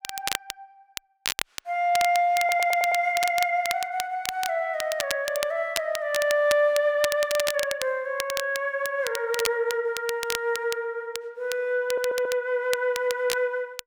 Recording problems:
crackle; vinyl, SNR 9 dB
audio stuttering; at 2.5 s and at 12 s

